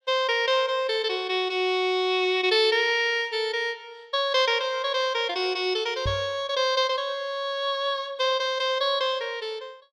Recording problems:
microphone bump; at 6 s; peak -3 dB vs average level

